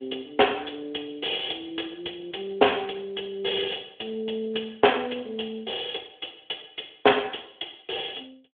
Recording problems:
telephone audio; 300 Hz to 3.5 kHz, Speex

